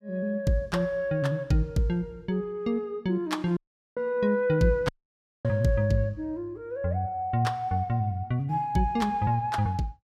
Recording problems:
audio cutting out; at 3.5 s and at 5 s for 0.5 s

